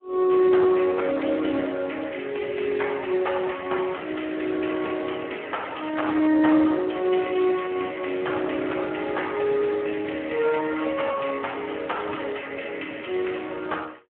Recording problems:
phone line; 190 Hz to 3.3 kHz, Speex

